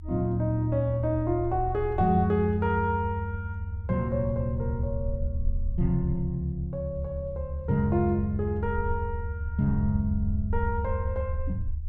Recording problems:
rumble; below 76 Hz, SNR 7 dB

